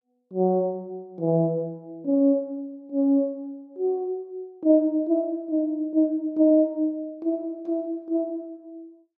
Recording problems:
none

